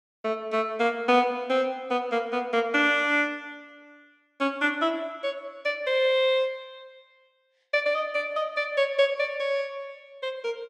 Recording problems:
none

